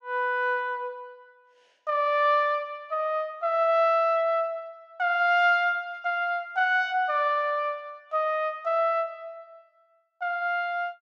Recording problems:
none

